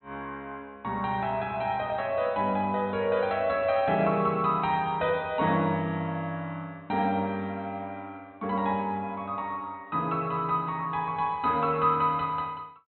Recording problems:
treble cut off; nothing above 4 kHz

